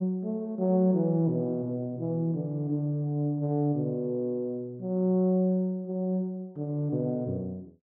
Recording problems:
none

